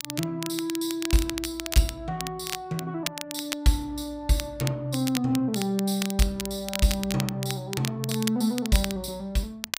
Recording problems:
crackling; vinyl, SNR 7 dB

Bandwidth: 15.5 kHz